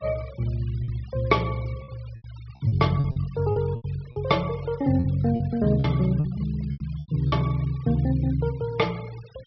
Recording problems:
treble cut off; nothing above 5.5 kHz
noise reduction artefacts; signal-to-artefact ratio 23 dB
packet loss; 9% of the sound replaced, filled with repeated pitch periods

